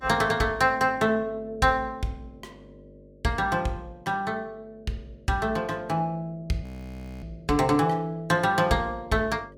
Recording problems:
hum; 50 Hz, harmonics up to 600 Hz, SNR 25 dB
frozen audio; at 6.5 s for 0.5 s

